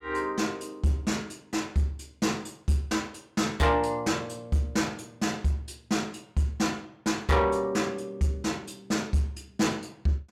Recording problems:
distortion; soft clipping, signal-to-distortion ratio 11 dB

